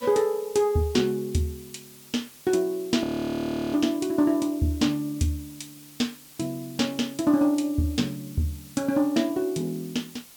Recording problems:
hiss; slope 0 dB per octave, SNR 20 dB
audio freezing; at 3 s for 0.5 s

